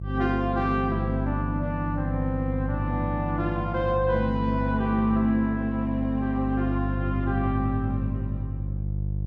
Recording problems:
hum; 50 Hz, harmonics up to 350 Hz, SNR 3 dB

